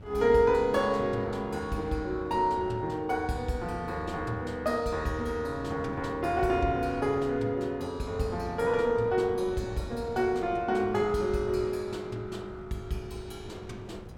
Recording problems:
wind noise; below 310 Hz, SNR 17 dB

